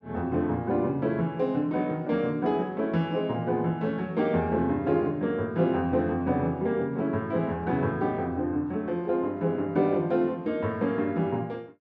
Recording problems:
none

